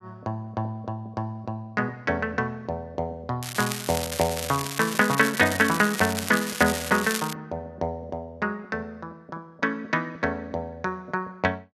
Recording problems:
crackle; from 3.5 to 7.5 s; loose cable, SNR 5 dB

